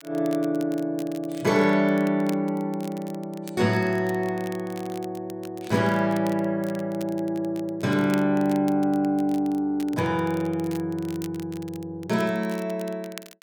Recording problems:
crackling; vinyl, SNR 21 dB

